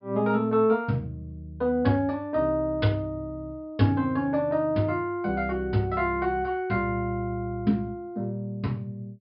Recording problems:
treble cut off; nothing above 5.5 kHz

